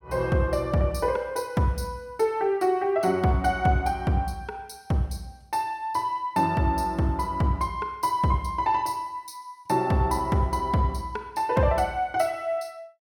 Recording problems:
none

